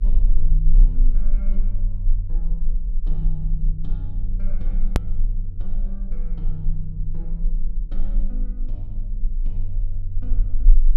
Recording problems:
electrical hum; 60 Hz, harmonics up to 480 Hz, SNR 14 dB
rumble; below 32 Hz, strongest tone 18 Hz, SNR -10 dB
edit click; at 5 s

